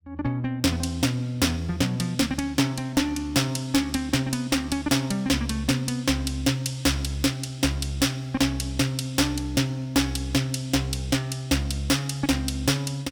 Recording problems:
distorted audio; hard clipping, signal-to-distortion ratio 12 dB

